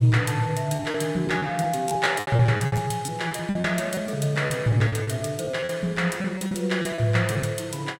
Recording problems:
lost packets; 13% of the sound replaced, filled with repeated pitch periods

